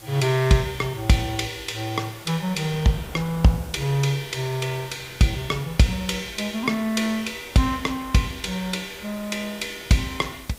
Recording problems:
background hiss; slope 0 dB per octave, SNR 20 dB
wind noise; below 780 Hz, SNR 23 dB

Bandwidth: 15.5 kHz